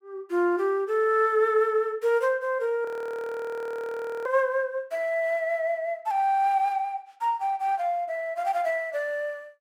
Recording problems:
audio freezing; at 3 s for 1.5 s

